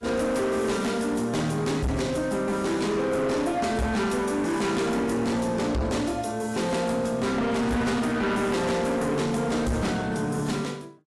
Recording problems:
lossy codec; AAC, log-spectral distance 3 dB, nothing above 11.3 kHz
distorted audio; hard clipping, signal-to-distortion ratio 8 dB

